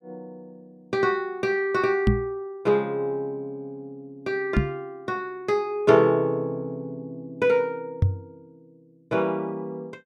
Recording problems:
microphone thump; at 2 s, at 4.5 s and at 8 s; peak +8 dB vs average level

